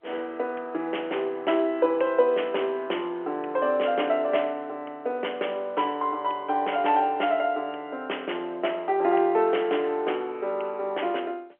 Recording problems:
phone line; 300 Hz to 3.2 kHz, G.711

